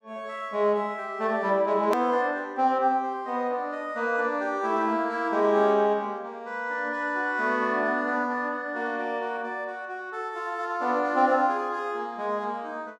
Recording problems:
click at an edit; at 2 s

